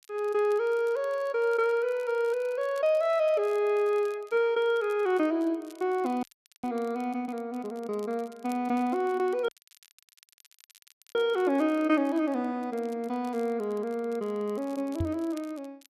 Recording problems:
crackle; vinyl, SNR 28 dB
audio cutting out; at 6 s and at 9.5 s for 1.5 s
knock on the microphone; at 15 s; peak +1 dB vs average level

